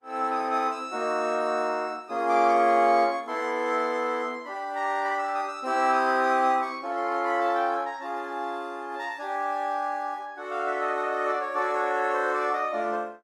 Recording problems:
lossy compression; Opus, log-spectral distance 2 dB, nothing above 18.3 kHz

